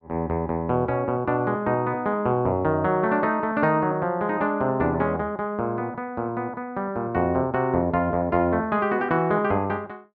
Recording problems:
none

